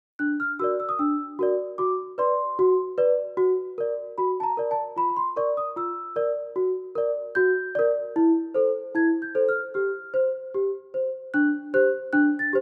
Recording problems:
none

